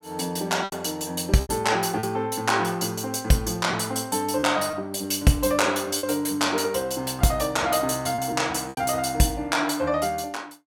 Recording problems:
lost packets; 4% of the sound replaced, filled with repeated pitch periods

